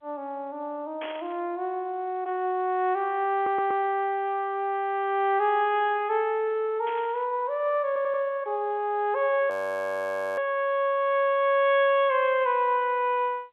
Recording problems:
telephone audio; 220 Hz to 3.6 kHz, G.711
static burst; at 1 s and at 7 s; peak -9 dB vs average level
audio stuttering; at 3.5 s and at 8 s
audio freezing; at 9.5 s for 1 s

